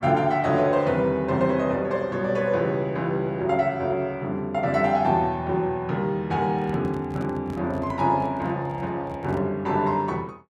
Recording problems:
microphone handling noise; from 6.5 to 9.5 s; peak -9 dB vs average level

